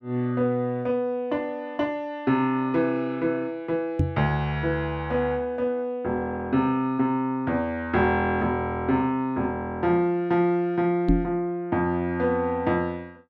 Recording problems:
microphone thump; at 4 s and at 11 s; peak +7 dB vs average level

